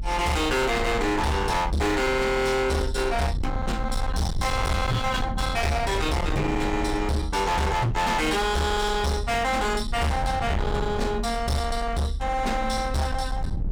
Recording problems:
distorted audio; hard clipping, signal-to-distortion ratio 7 dB
rumble; below 130 Hz, SNR 7 dB

